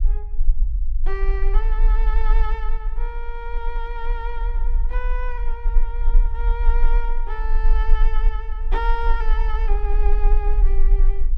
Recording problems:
low-frequency rumble; below 36 Hz, strongest tone 22 Hz, SNR -9 dB

